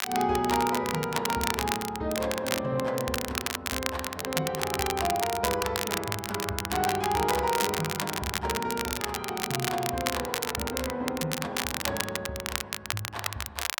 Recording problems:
crackling; vinyl, SNR 2 dB

